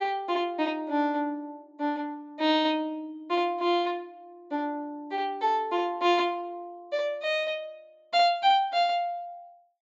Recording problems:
treble cut off; nothing above 8 kHz

